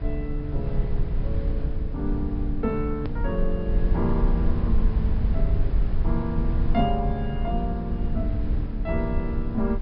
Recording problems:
treble missing; nothing above 5.2 kHz
low-frequency rumble; below 66 Hz, SNR -2 dB
hard cut with a click; at 3 s

